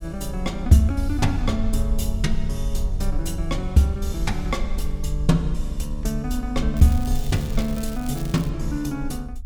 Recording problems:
low-frequency rumble; below 52 Hz, SNR 6 dB
crackle; from 7 to 8.5 s; loose cable, SNR 18 dB

